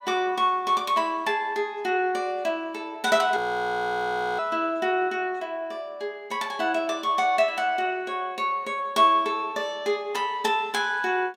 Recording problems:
frozen audio; at 3.5 s for 1 s

